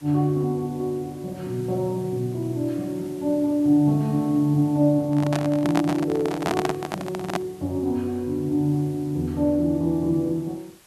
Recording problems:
background hiss; slope -1 dB per octave, SNR 26 dB
microphone handling noise; from 5 to 7.5 s; peak +2 dB vs average level

